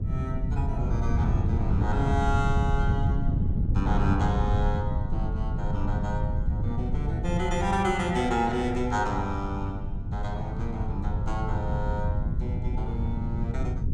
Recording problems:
wind on the microphone; below 130 Hz, SNR -2 dB

